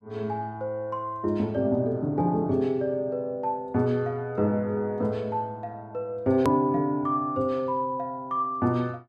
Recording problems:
hard cut with a click; at 6.5 s

